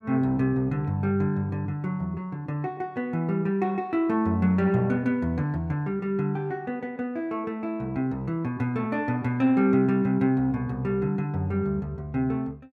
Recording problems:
none

